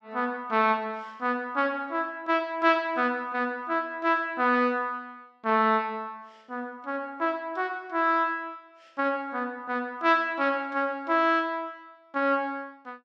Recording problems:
none

